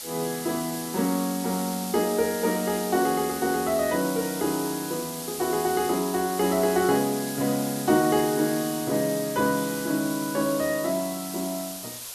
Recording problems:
hiss; SNR 8 dB

